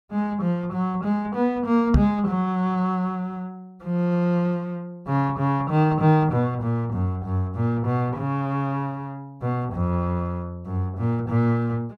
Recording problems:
microphone bump; at 2 s; peak +8 dB vs average level

